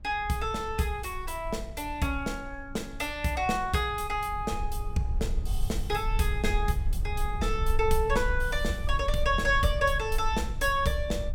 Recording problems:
low-frequency rumble; below 60 Hz, SNR 5 dB

